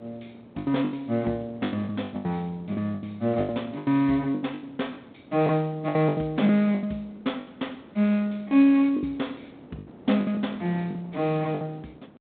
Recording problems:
telephone audio; 170 Hz to 3.7 kHz, G.726
wind on the microphone; below 550 Hz, SNR 23 dB
packet loss; 14% of the sound replaced, filled with the last packet

